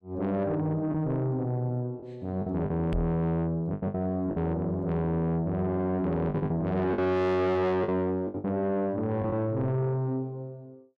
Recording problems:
distorted audio; soft clipping, signal-to-distortion ratio 8 dB
packet loss; 6% of the sound replaced, filled with the last packet
microphone bump; at 3 s; peak +1 dB vs average level

